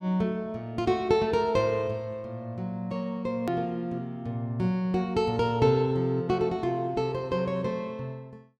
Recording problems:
click at an edit; at 3.5 s

